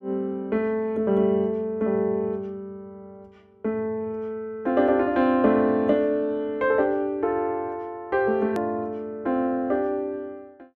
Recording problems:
edit click; at 8.5 s

